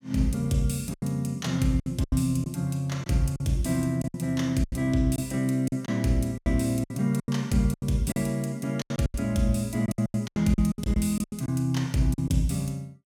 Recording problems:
lost packets; 13% of the sound replaced, filled with silence

